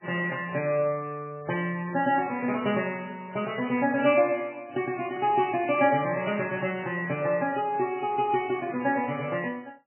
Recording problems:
lossy codec; MP3, log-spectral distance 3 dB, nothing above 2.7 kHz

